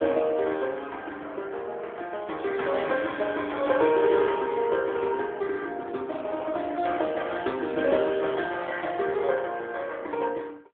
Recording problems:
phone line; 280 Hz to 2.8 kHz, AMR-NB

